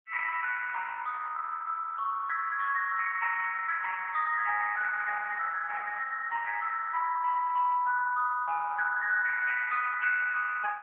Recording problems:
telephone audio; 450 Hz to 2.2 kHz, AMR-NB

